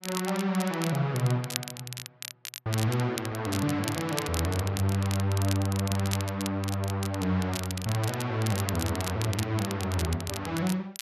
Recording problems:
crackling; vinyl, SNR 9 dB

